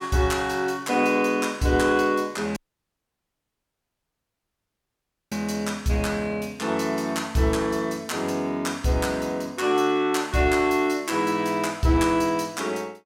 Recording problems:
dropout; at 2.5 s for 2.5 s

